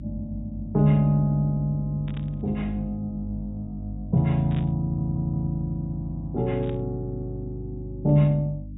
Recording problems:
treble cut off; nothing above 4 kHz
electrical hum; 50 Hz, harmonics up to 300 Hz, SNR 11 dB
burst of static; at 2 s, at 4.5 s and at 6.5 s; peak -14 dB vs average level
stutter; at 5 s

